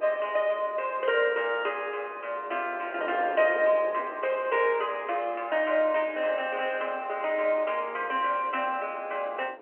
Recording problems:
phone line; 320 Hz to 3.1 kHz, G.711
wind on the microphone; below 830 Hz, SNR 17 dB

